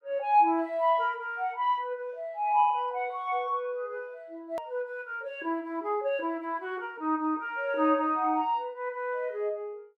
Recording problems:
click at an edit; at 4.5 s

